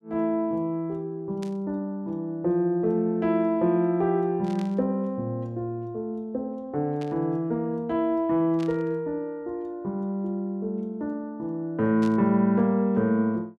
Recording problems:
burst of static; 5 times, first at 1.5 s; peak -13 dB vs average level

